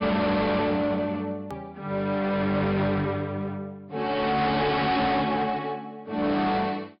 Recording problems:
treble cut off; nothing above 5.5 kHz
distortion; hard clipping, uneven, signal-to-distortion ratio 7 dB
hard cut with a click; at 1.5 s

